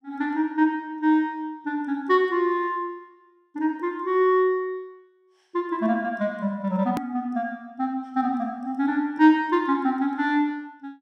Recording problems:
hard cut with a click; at 7 s

